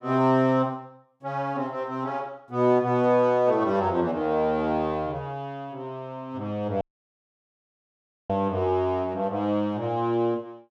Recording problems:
dropout; at 7 s for 1.5 s

